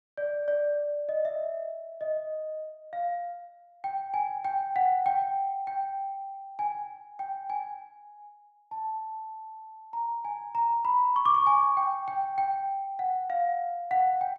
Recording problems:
none

